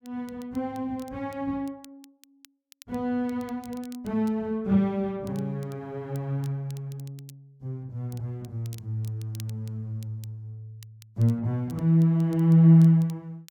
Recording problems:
crackle; vinyl, SNR 28 dB

